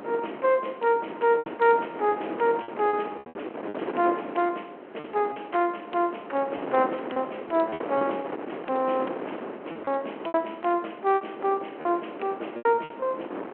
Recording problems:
phone line; 280 Hz to 3.3 kHz, G.726
wind noise; below 830 Hz, SNR 10 dB
packet loss; 8% of the sound replaced, filled with repeated pitch periods

